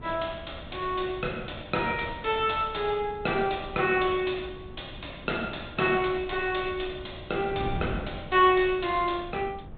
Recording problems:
treble cut off; nothing above 4 kHz
wind on the microphone; below 220 Hz, SNR 15 dB

